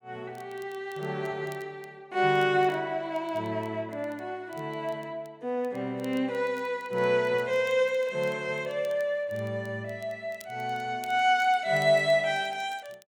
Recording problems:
crackling; vinyl, SNR 28 dB

